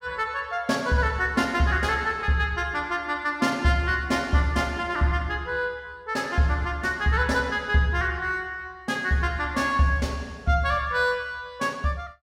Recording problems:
none

